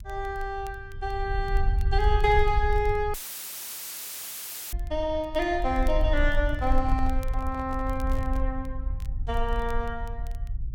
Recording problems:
rumble; below 58 Hz, SNR 2 dB
crackle; vinyl, SNR 27 dB
audio cutting out; at 3 s for 1.5 s; filled with static
handling noise; from 6.5 to 8.5 s; peak -10 dB vs average level

